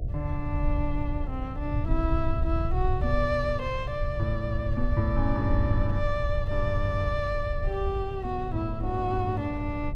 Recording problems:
hum; 60 Hz, harmonics up to 720 Hz, SNR 17 dB
low-frequency rumble; below 86 Hz, SNR 2 dB

